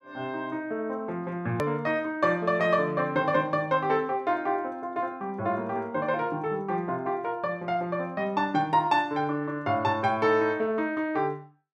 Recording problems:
click at an edit; at 1.5 s

